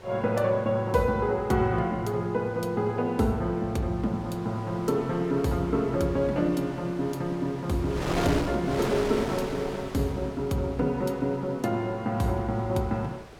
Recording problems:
wind on the microphone; below 1.5 kHz, SNR 11 dB

